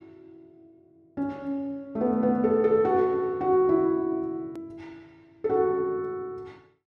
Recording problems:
hard cut with a click; at 4.5 s

